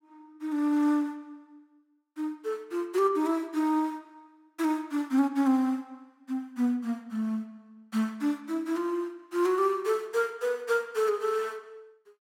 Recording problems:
none

